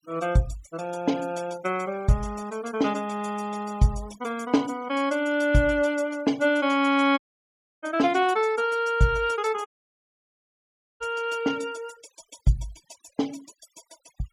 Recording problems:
denoising artefacts; signal-to-artefact ratio 22 dB
dropout; at 7 s for 0.5 s and at 9.5 s for 1.5 s

